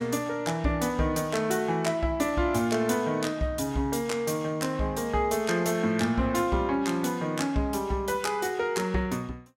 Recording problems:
none

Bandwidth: 16.5 kHz